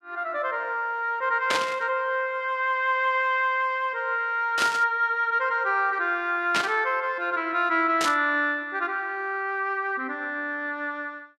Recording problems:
static burst; 4 times, first at 1.5 s; peak +3 dB vs average level

